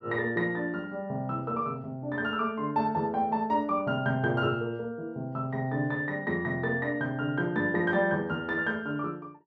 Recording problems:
none

